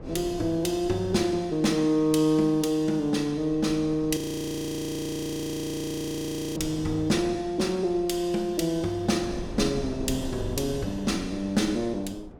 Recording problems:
wind on the microphone; below 350 Hz, SNR 15 dB
frozen audio; at 4 s for 2.5 s

